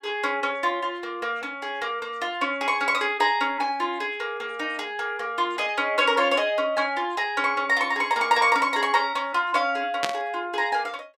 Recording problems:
burst of static; at 10 s; peak +3 dB vs average level

